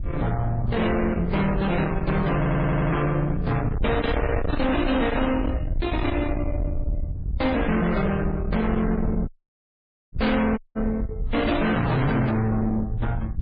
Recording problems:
lossy compression; MP3, then MP3, log-spectral distance 2 dB, nothing above 4.2 kHz
distorted audio; soft clipping, signal-to-distortion ratio 7 dB
wind on the microphone; below 260 Hz, SNR 5 dB
stutter; at 2.5 s
dropout; at 9.5 s for 1 s and at 11 s

